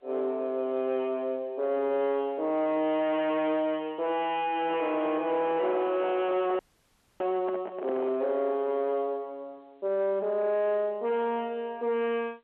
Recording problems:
telephone audio; 240 Hz to 3.3 kHz, G.711
distorted audio; soft clipping, signal-to-distortion ratio 6 dB
microphone handling noise; from 4.5 to 8 s; peak -3 dB vs average level
audio cutting out; at 6.5 s for 0.5 s

